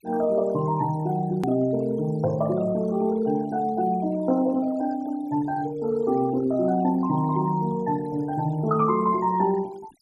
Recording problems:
noise reduction artefacts; signal-to-artefact ratio 22 dB
edit click; at 1.5 s

